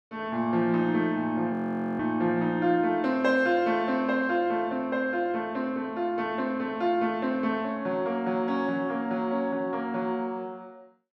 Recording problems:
frozen audio; at 1.5 s

